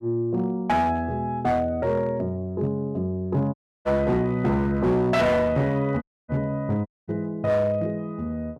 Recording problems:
distorted audio; hard clipping, signal-to-distortion ratio 11 dB
dropout; at 3.5 s, at 6 s and at 7 s

